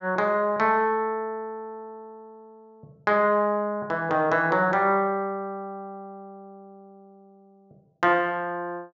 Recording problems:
low-pass filter; nothing above 7.3 kHz

